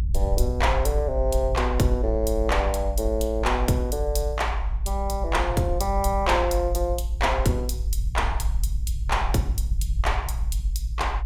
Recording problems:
low-frequency rumble; below 58 Hz, strongest tone 56 Hz, SNR 2 dB

